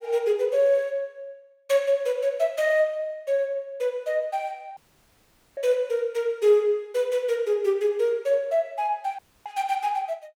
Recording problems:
dropout; at 5 s for 1 s and at 9 s

